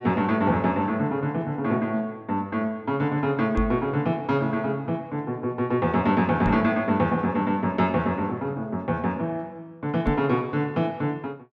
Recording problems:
knock on the microphone; at 3.5 s, at 6.5 s and at 10 s; peak +2 dB vs average level

